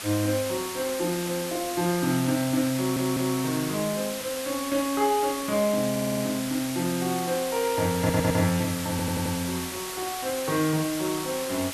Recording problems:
background hiss; slope 0 dB per octave, SNR 6 dB
stutter; 4 times, first at 3 s

